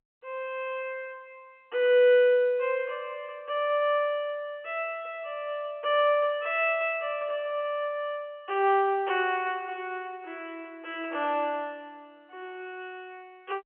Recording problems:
telephone audio; 340 Hz to 3.2 kHz, G.711

